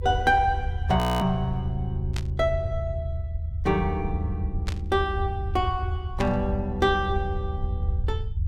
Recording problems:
rumble; below 82 Hz, SNR 4 dB
frozen audio; at 1 s
static burst; at 2 s, at 4.5 s and at 6 s; peak -3 dB vs average level

